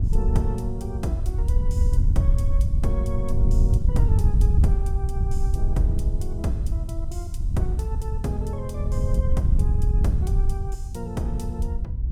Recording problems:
wind noise; below 80 Hz, SNR -7 dB

